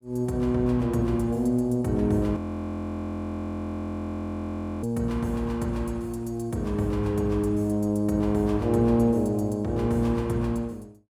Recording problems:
frozen audio; at 2.5 s for 2.5 s

